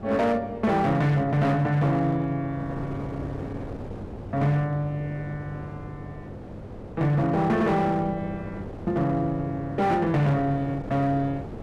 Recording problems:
distortion; hard clipping, signal-to-distortion ratio 11 dB
electrical hum; 50 Hz, harmonics up to 800 Hz, SNR 19 dB
wind on the microphone; below 510 Hz, SNR 14 dB

